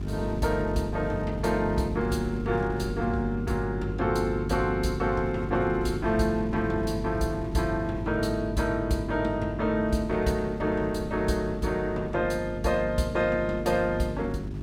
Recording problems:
hum; 50 Hz, harmonics up to 400 Hz, SNR 7 dB
wind noise; below 210 Hz, SNR 16 dB

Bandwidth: 17.5 kHz